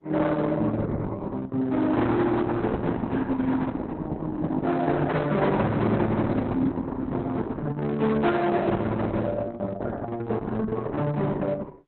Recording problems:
lossy compression; Opus, log-spectral distance 3 dB, nothing above 4 kHz
distortion; hard clipping, uneven, signal-to-distortion ratio 10 dB

